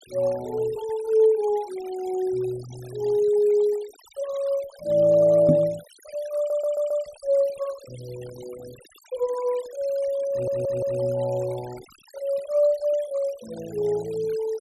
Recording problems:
denoising artefacts; signal-to-artefact ratio 23 dB
microphone bump; at 5.5 s; peak +6 dB vs average level
audio stuttering; at 6.5 s and at 10 s

